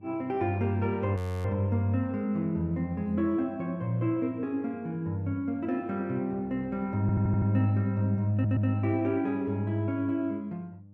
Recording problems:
hum; 50 Hz, harmonics up to 600 Hz, SNR 24 dB
audio freezing; at 1 s
audio stuttering; at 7 s and at 8.5 s

